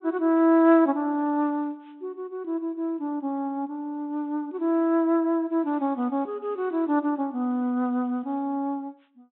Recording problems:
treble missing; nothing above 3.8 kHz

